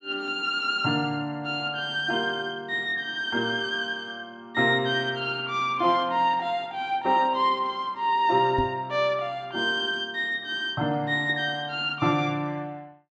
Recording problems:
knock on the microphone; at 8.5 s; peak 0 dB vs average level

